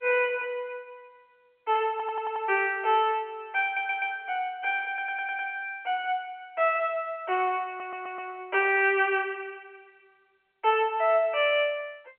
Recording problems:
telephone audio; 320 Hz to 3.1 kHz, G.711
audio stuttering; 4 times, first at 2 s

